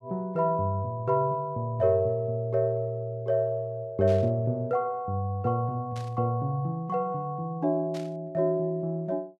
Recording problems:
burst of static; at 4 s, at 6 s and at 8 s; peak -13 dB vs average level

